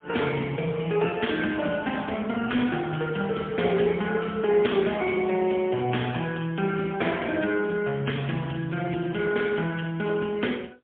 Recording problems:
phone line; 260 Hz to 3.4 kHz, AMR-NB, then MP3

